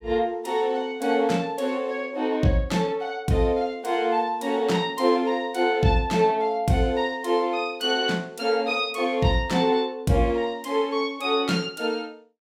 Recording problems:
none

